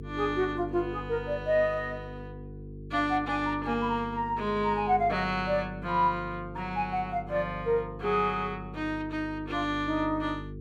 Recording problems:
hum; 50 Hz, harmonics up to 450 Hz, SNR 12 dB

